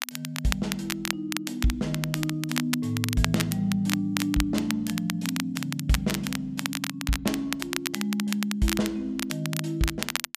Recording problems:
crackling; vinyl, SNR 4 dB

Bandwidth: 14.5 kHz